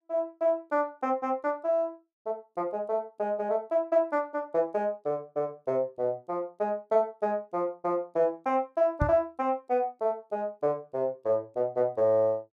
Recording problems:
microphone bump; at 9 s; peak +5 dB vs average level

